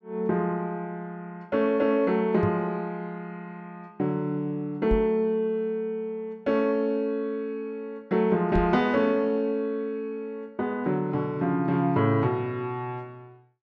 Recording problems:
knock on the microphone; at 2.5 s, at 5 s and at 8.5 s; peak +1 dB vs average level

